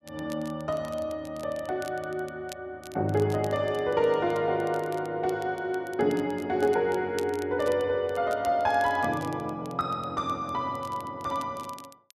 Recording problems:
crackling; vinyl, SNR 22 dB

